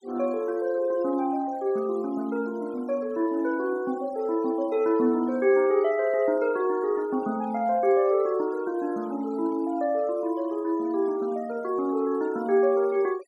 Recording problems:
denoising artefacts; signal-to-artefact ratio 24 dB

